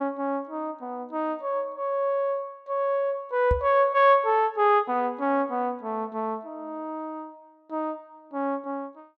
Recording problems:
microphone bump; at 3.5 s; peak +2 dB vs average level

